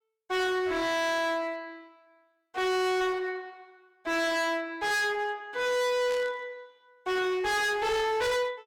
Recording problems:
distortion; hard clipping, uneven, signal-to-distortion ratio 5 dB
static burst; at 6 s; peak -10 dB vs average level

